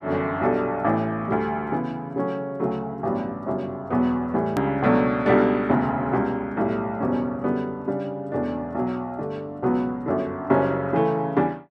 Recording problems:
click at an edit; at 4.5 s

